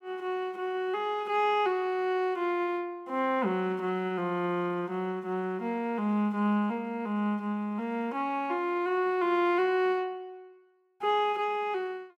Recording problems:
none

